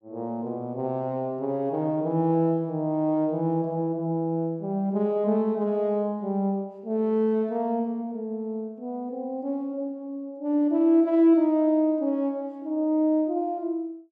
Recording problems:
none

